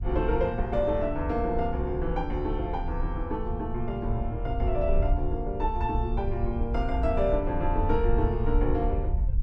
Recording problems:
wind on the microphone; below 64 Hz, SNR 3 dB

